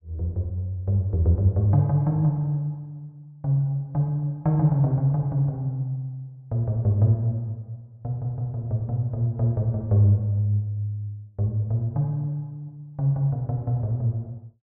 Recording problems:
stutter; at 8 s

